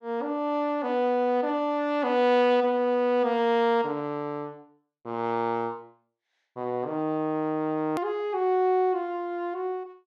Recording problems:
edit click; at 8 s

